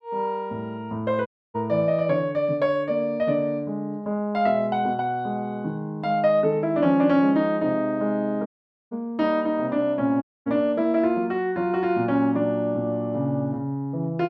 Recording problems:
dropout; at 1.5 s, at 8.5 s and at 10 s

